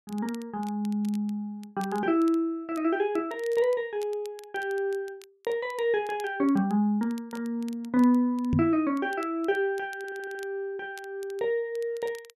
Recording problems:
crackling; vinyl, SNR 25 dB
microphone bump; at 8.5 s; peak +6 dB vs average level
stutter; at 10 s

